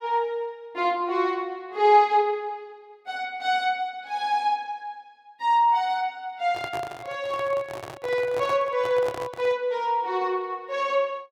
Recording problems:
microphone handling noise; from 6.5 to 9.5 s; peak -6 dB vs average level

